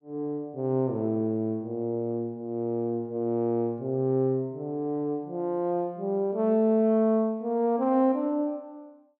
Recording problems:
none

